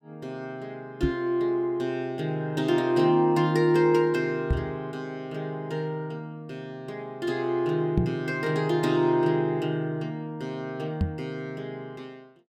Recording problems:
knock on the microphone; 4 times, first at 1 s; peak +6 dB vs average level

